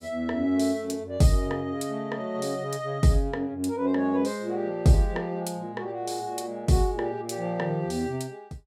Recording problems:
none

